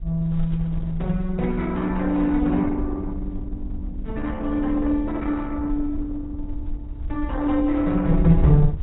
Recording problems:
treble missing; nothing above 3.8 kHz
codec artefacts; Opus, log-spectral distance 2 dB
wind on the microphone; below 66 Hz, SNR 8 dB

